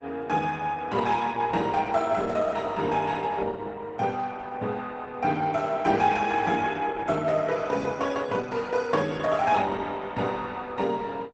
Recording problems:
codec artefacts; Opus, log-spectral distance 4 dB, nothing above 8 kHz

